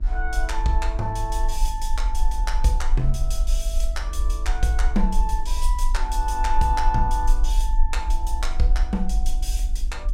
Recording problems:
hum; 50 Hz, harmonics up to 700 Hz, SNR 21 dB
low-frequency rumble; below 44 Hz, strongest tone 22 Hz, SNR -2 dB

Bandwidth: 16.5 kHz